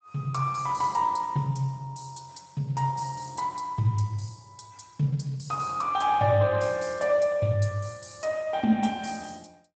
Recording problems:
codec artefacts; Speex, log-spectral distance 6 dB, nothing above 8 kHz

